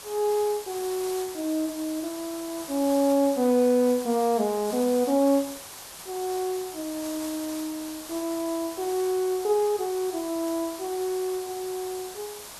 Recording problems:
hiss; SNR 12 dB

